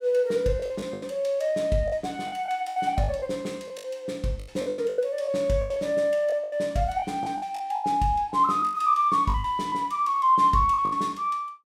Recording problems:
packet loss; 13% of the sound replaced, filled with the last packet

